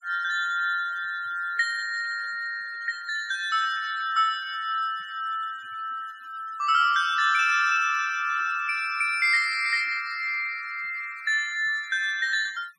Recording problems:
denoising artefacts; signal-to-artefact ratio 22 dB

